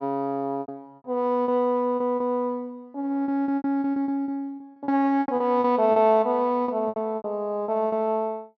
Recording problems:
treble missing; nothing above 6.6 kHz
packet loss; 13% of the sound replaced, filled with repeated pitch periods

